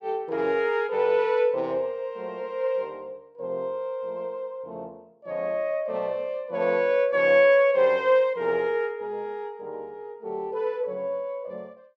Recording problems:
none

